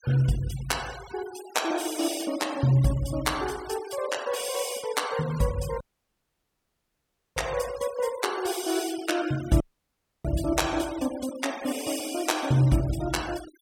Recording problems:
noise reduction artefacts; signal-to-artefact ratio 15 dB
dropout; at 6 s for 1.5 s and at 9.5 s for 0.5 s

